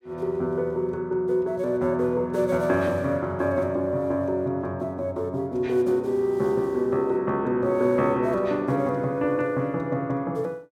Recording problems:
none

